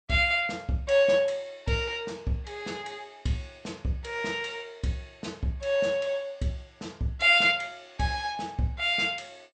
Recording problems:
codec artefacts; MP2, log-spectral distance 2 dB, nothing above 8.5 kHz

